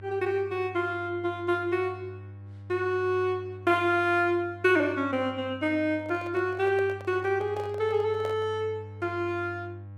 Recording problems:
hum; 50 Hz, harmonics up to 800 Hz, SNR 16 dB
microphone handling noise; from 6 to 8.5 s; peak -7 dB vs average level

